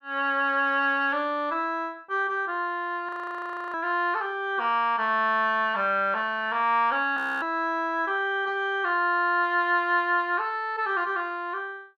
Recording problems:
audio freezing; at 3 s for 0.5 s and at 7 s

